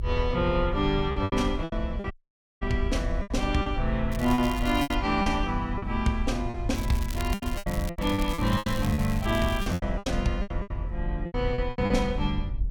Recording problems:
rumble; below 74 Hz, SNR 5 dB
lost packets; 14% of the sound replaced, filled with repeated pitch periods
dropout; at 2 s for 0.5 s
crackle; at 4 s and from 7 to 10 s; loose cable, SNR 14 dB

